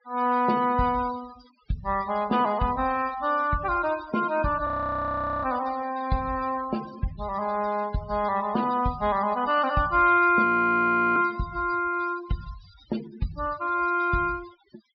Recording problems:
low-pass filter; nothing above 5.5 kHz
denoising artefacts; signal-to-artefact ratio 18 dB
frozen audio; at 4.5 s for 1 s and at 10 s for 0.5 s

